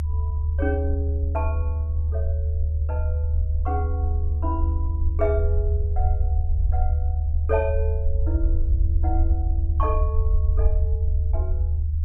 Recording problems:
low-frequency rumble; below 78 Hz, strongest tone 76 Hz, SNR -8 dB

